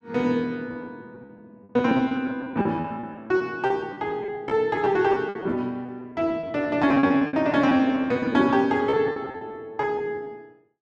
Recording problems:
packet loss; 16% of the sound replaced, filled with repeated pitch periods

